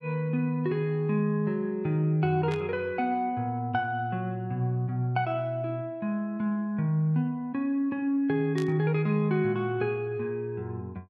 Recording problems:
burst of static; at 2.5 s and at 8.5 s; peak -9 dB vs average level

